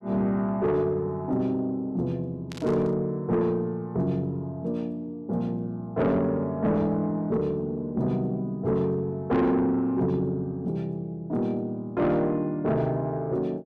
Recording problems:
distortion; soft clipping, signal-to-distortion ratio 11 dB
static burst; at 2.5 s; peak -10 dB vs average level

